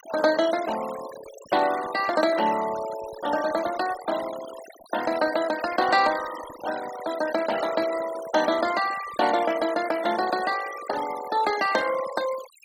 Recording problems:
denoising artefacts; signal-to-artefact ratio 13 dB

